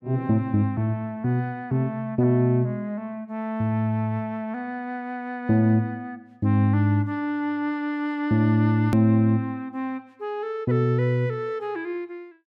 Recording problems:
edit click; at 9 s

